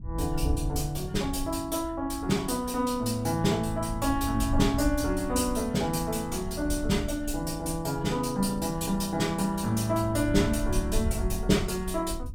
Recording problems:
wind on the microphone; below 80 Hz, SNR 9 dB

